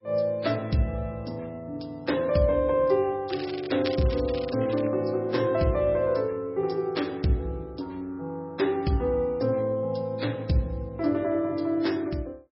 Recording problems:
codec artefacts; MP3, log-spectral distance 3 dB, nothing above 5.5 kHz
crackle; from 3.5 to 5 s; loose cable, SNR 14 dB

